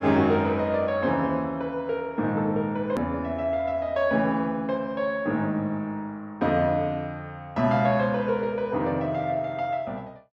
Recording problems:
edit click; at 3 s

